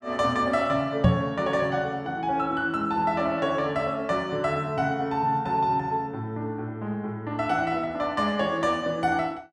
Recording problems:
microphone thump; at 1 s; peak +9 dB vs average level

